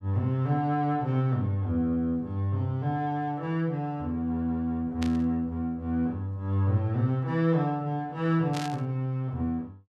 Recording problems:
static burst; at 5 s and at 8.5 s; peak -5 dB vs average level

